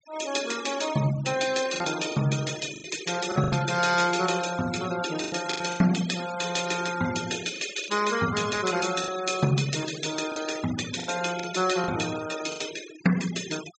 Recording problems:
treble missing; nothing above 8 kHz
denoising artefacts; signal-to-artefact ratio 11 dB
lost packets; 7% of the sound replaced, filled with the last packet

